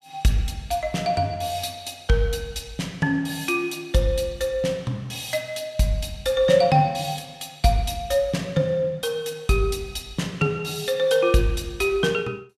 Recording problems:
none

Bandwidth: 15 kHz